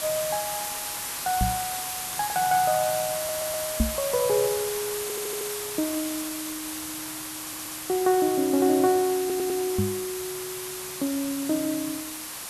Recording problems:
background hiss; SNR 4 dB
microphone bump; at 1.5 s, at 4 s and at 10 s; peak +7 dB vs average level
stutter; 4 times, first at 3 s

